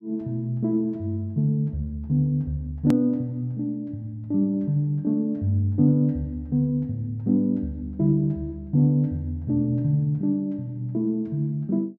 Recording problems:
edit click; at 3 s

